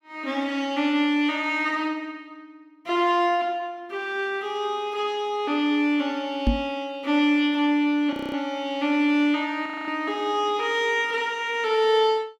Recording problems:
microphone bump; at 6.5 s; peak +5 dB vs average level
frozen audio; at 8 s and at 9.5 s

